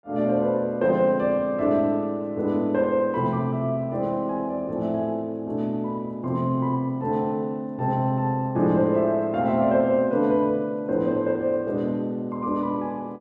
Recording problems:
none

